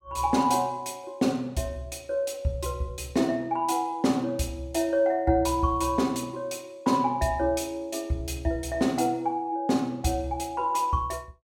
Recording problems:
none

